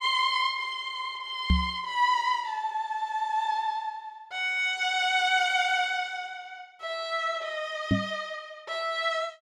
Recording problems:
microphone thump; at 1.5 s and at 8 s; peak +7 dB vs average level

